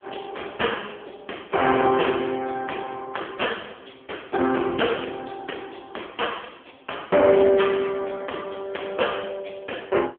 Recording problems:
phone line; 280 Hz to 3.3 kHz, AMR-NB
distorted audio; hard clipping, signal-to-distortion ratio 9 dB

